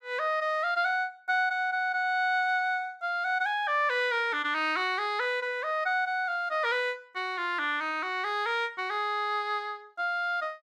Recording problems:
none

